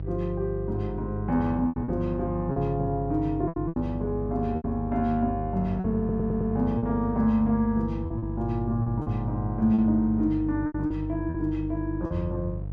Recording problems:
electrical hum; 50 Hz, harmonics up to 500 Hz, SNR 7 dB
lost packets; 7% of the sound replaced, filled with repeated pitch periods
stutter; at 6 s

